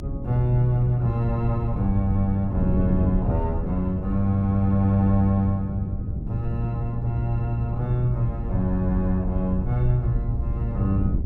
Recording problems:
low-frequency rumble; below 64 Hz, SNR 9 dB
wind noise; below 170 Hz, SNR 7 dB

